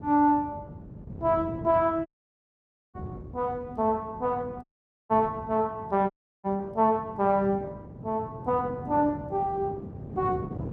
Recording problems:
lossy codec; Opus, log-spectral distance 2 dB
wind noise; below 250 Hz, SNR 13 dB
audio cutting out; at 2 s for 1 s, at 4.5 s and at 6 s

